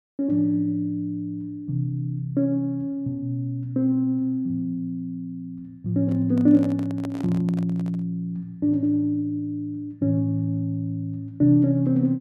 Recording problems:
microphone handling noise; from 6 to 8 s; peak -9 dB vs average level

